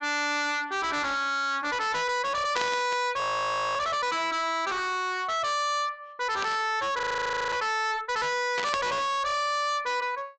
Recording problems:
low-pass filter; nothing above 8 kHz
distorted audio; hard clipping, signal-to-distortion ratio 6 dB
static burst; at 2.5 s, at 6.5 s and at 8.5 s; peak -1 dB vs average level
audio freezing; at 3 s for 0.5 s and at 7 s for 0.5 s

